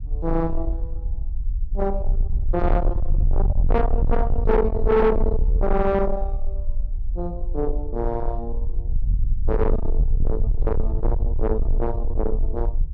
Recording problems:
distortion; soft clipping, signal-to-distortion ratio 7 dB
rumble; below 58 Hz, strongest tone 22 Hz, SNR 1 dB

